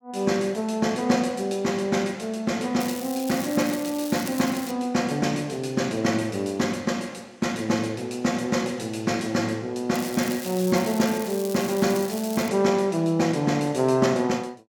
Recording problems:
crackle; from 3 to 4.5 s and from 10 to 12 s; loose cable, SNR 13 dB

